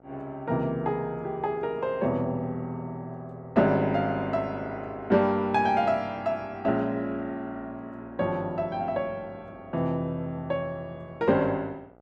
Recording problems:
mains hum; 60 Hz, harmonics up to 1.6 kHz, SNR 27 dB

